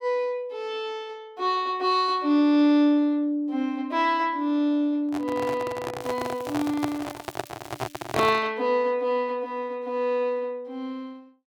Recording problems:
microphone handling noise; from 5 to 8.5 s; peak +3 dB vs average level
crackle; from 6 to 8.5 s; loose cable, SNR 24 dB

